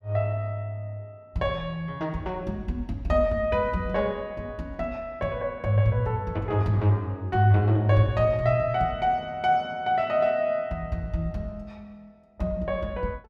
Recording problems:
none

